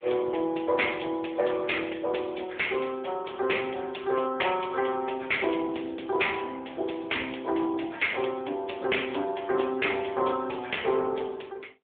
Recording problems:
phone line; 280 Hz to 3.5 kHz, AMR-NB

